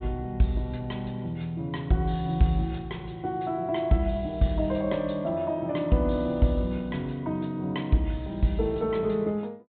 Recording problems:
treble missing; nothing above 4 kHz

